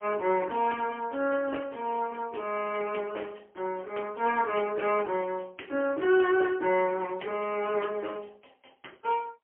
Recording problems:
phone line; 260 Hz to 3 kHz, AMR-NB, then MP3

